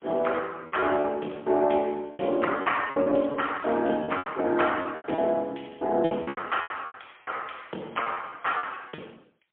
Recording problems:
telephone audio; 280 Hz to 3.3 kHz, AMR-NB, then MP3
packet loss; 15% of the sound replaced, filled with repeated pitch periods

